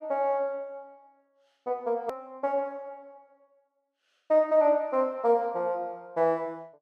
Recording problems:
edit click; at 2 s

